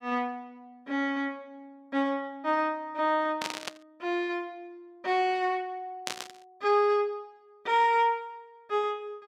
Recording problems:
burst of static; at 3.5 s and at 6 s; peak 0 dB vs average level

